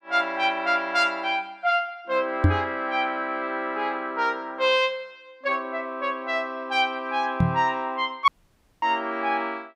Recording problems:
microphone bump; at 2.5 s and at 7.5 s; peak +9 dB vs average level
dropout; at 8.5 s for 0.5 s

